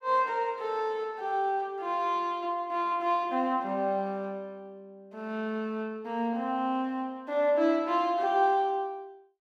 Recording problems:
none

